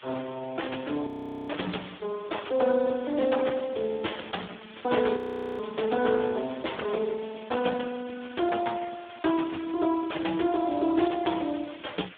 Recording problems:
phone line; 260 Hz to 3.6 kHz, Speex
background hiss; SNR 19 dB
frozen audio; at 1 s and at 5 s

